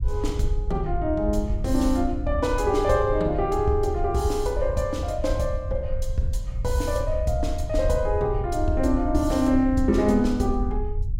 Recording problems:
rumble; below 74 Hz, SNR 6 dB

